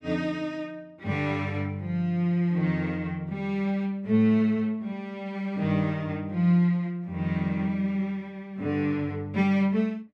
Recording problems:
none

